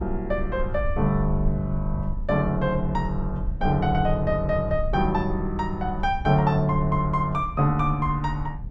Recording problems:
low-frequency rumble; below 68 Hz, SNR 8 dB

